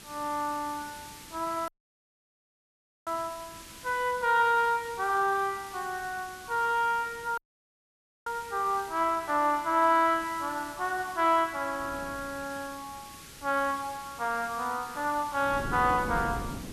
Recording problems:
background hiss; SNR 17 dB
wind noise; below 360 Hz, SNR 13 dB
audio cutting out; at 1.5 s for 1.5 s and at 7.5 s for 1 s

